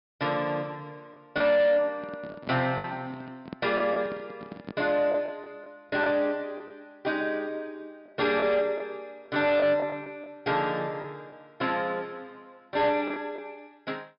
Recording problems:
low-pass filter; nothing above 5.2 kHz
distortion; soft clipping, signal-to-distortion ratio 12 dB
lost packets; 5% of the sound replaced, filled with the last packet
microphone handling noise; from 2 to 5 s; peak -5 dB vs average level

